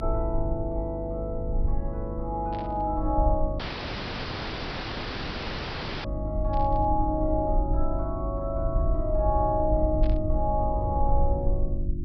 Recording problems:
treble cut off; nothing above 5.5 kHz
hum; 50 Hz, harmonics up to 350 Hz, SNR 5 dB
rumble; below 60 Hz, SNR 3 dB
burst of static; at 2.5 s, at 6.5 s and at 10 s; peak -13 dB vs average level
audio cutting out; at 3.5 s for 2.5 s

